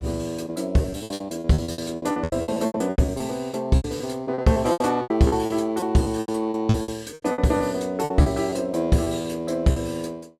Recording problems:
lost packets; 19% of the sound replaced, filled with repeated pitch periods

